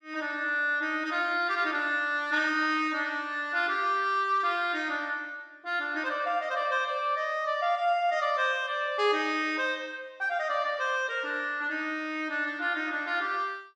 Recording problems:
none

